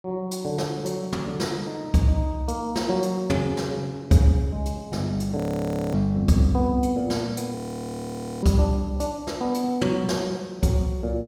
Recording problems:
frozen audio; at 5.5 s for 0.5 s and at 7.5 s for 1 s

